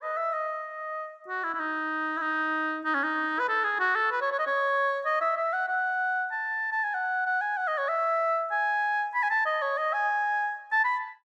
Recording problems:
none

